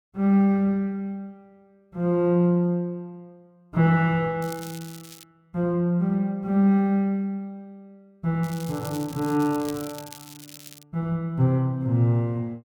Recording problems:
crackling; at 4.5 s and from 8.5 to 11 s; loose cable, SNR 19 dB

